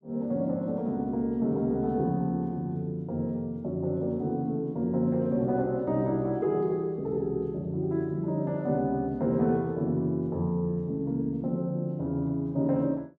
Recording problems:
none

